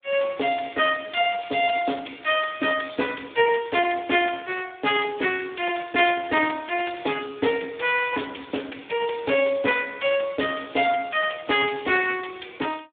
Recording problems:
telephone audio; 280 Hz to 3.5 kHz, Speex

